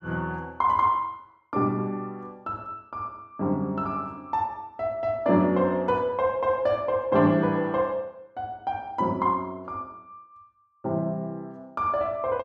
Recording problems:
none

